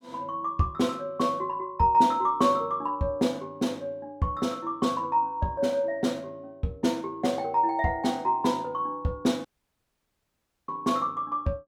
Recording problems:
dropout; at 9.5 s for 1 s

